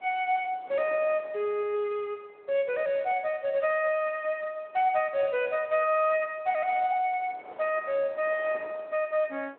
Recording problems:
telephone audio; 300 Hz to 3.7 kHz, Speex
wind noise; below 980 Hz, SNR 24 dB

